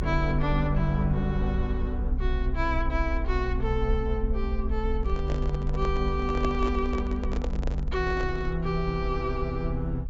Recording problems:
treble missing; nothing above 8 kHz
low-frequency rumble; below 60 Hz, SNR 2 dB
handling noise; from 5 to 8.5 s; peak +1 dB vs average level

